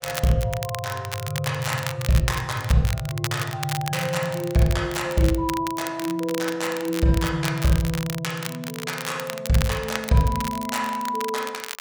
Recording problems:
crackling; vinyl, SNR 9 dB

